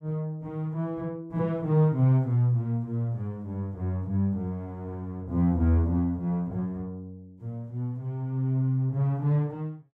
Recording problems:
none

